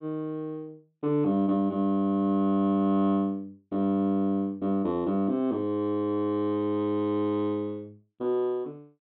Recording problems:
low-pass filter; nothing above 4 kHz

